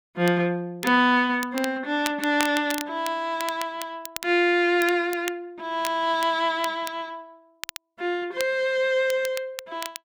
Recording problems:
crackling; vinyl, SNR 13 dB

